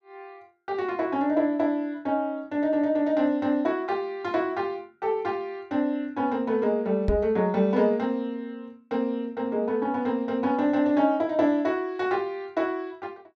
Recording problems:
microphone bump; at 7 s; peak +2 dB vs average level

